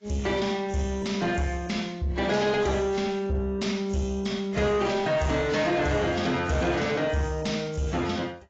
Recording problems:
codec artefacts; AAC, log-spectral distance 3 dB, nothing above 7.3 kHz
distortion; soft clipping, signal-to-distortion ratio 10 dB

